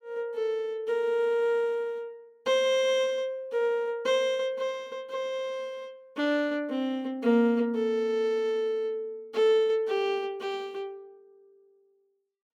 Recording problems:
none

